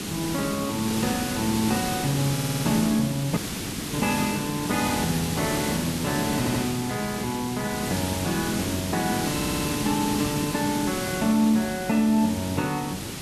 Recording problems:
hiss; SNR 3 dB
audio stuttering; at 2.5 s, at 6.5 s and at 9.5 s
dropout; at 3.5 s for 0.5 s

